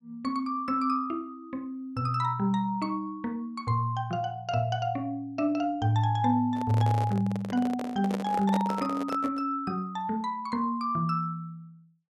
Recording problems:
handling noise; from 6.5 to 9.5 s; peak -1 dB vs average level

